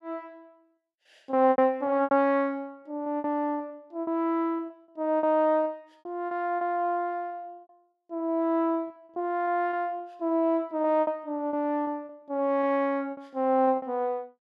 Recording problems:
packet loss; 10% of the sound replaced, filled with repeated pitch periods

